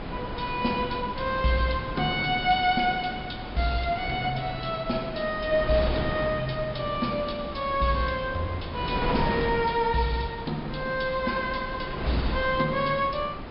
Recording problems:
low-pass filter; nothing above 5.5 kHz
wind on the microphone; below 790 Hz, SNR 8 dB

